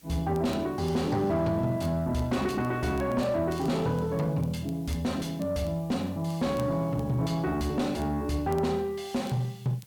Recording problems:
distortion; soft clipping, signal-to-distortion ratio 10 dB
hiss; slope -3 dB per octave, SNR 27 dB
crackle; vinyl, SNR 27 dB

